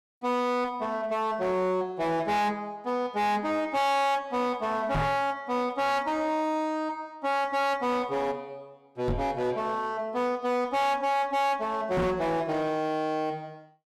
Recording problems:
distortion; hard clipping, uneven, signal-to-distortion ratio 7 dB
microphone bump; at 5 s, at 9 s and at 12 s; peak +5 dB vs average level

